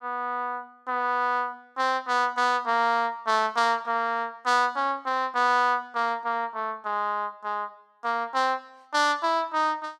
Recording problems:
none

